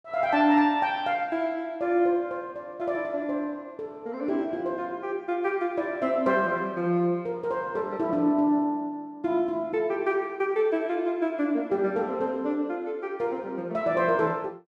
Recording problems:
none

